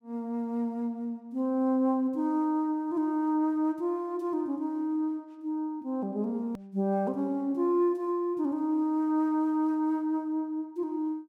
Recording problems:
click at an edit; at 6.5 s

